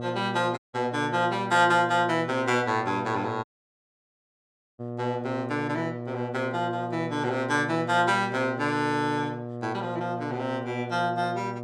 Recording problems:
hum; 60 Hz, harmonics up to 1.3 kHz, SNR 9 dB
dropout; at 0.5 s and at 3.5 s for 1.5 s

